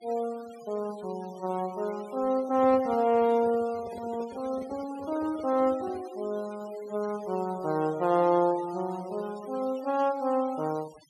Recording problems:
noise reduction artefacts; signal-to-artefact ratio 21 dB
microphone handling noise; from 2.5 to 6 s; peak -10 dB vs average level

